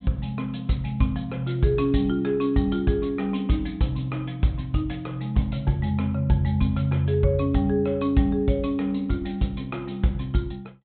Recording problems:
low-pass filter; nothing above 4 kHz

